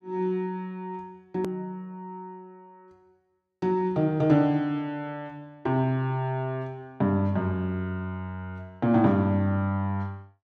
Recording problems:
hard cut with a click; at 1.5 s

